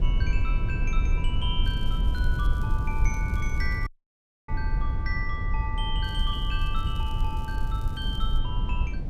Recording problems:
rumble; below 68 Hz, SNR -6 dB
crackle; from 1.5 to 4 s and from 6 to 8.5 s; loose cable, SNR 21 dB
dropout; at 4 s for 0.5 s

